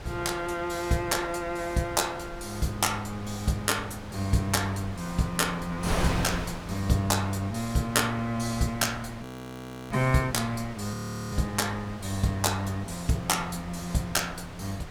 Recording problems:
wind noise; below 1.2 kHz, SNR 11 dB
frozen audio; at 9 s for 0.5 s and at 11 s

